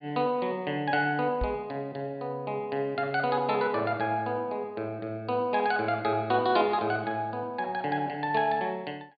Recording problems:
low-pass filter; nothing above 4.8 kHz
microphone bump; at 1.5 s; peak -1 dB vs average level

